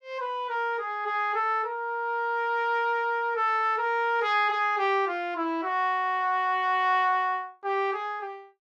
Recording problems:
none

